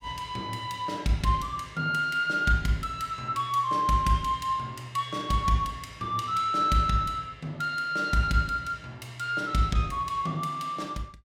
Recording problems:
none

